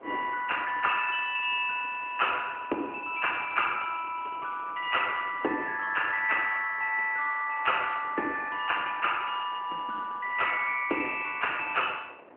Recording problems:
telephone audio; 260 Hz to 3.1 kHz, AMR-NB
wind on the microphone; below 1 kHz, SNR 22 dB

